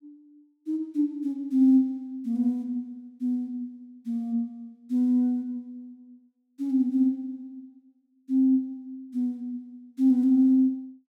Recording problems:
none

